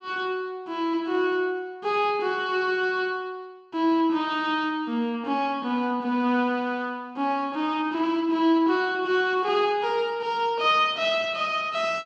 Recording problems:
none

